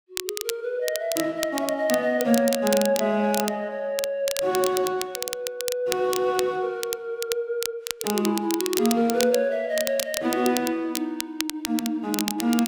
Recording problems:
crackle; vinyl, SNR 6 dB

